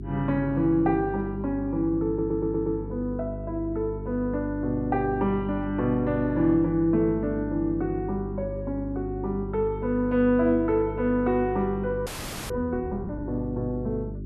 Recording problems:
mains hum; 50 Hz, harmonics up to 400 Hz, SNR 9 dB
stutter; at 2 s
audio freezing; at 12 s

